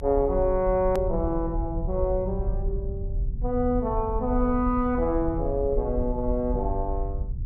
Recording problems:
rumble; below 70 Hz, SNR 6 dB
hard cut with a click; at 1 s

